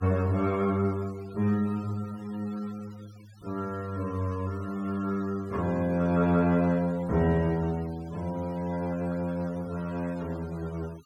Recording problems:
noise reduction artefacts; signal-to-artefact ratio 23 dB

